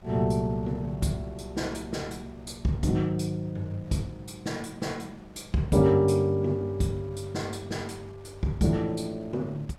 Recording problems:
wind on the microphone; below 840 Hz, SNR 25 dB

